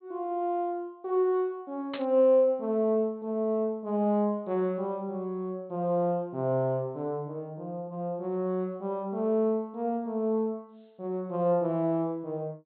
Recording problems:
treble cut off; nothing above 4.3 kHz
burst of static; at 2 s; peak -5 dB vs average level

